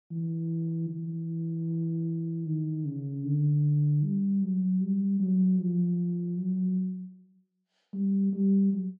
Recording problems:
none

